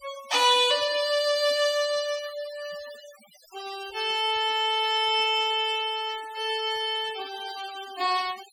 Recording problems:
noise reduction artefacts; signal-to-artefact ratio 18 dB

